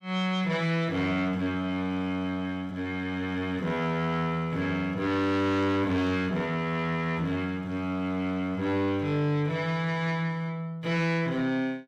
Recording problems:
distortion; soft clipping, signal-to-distortion ratio 12 dB

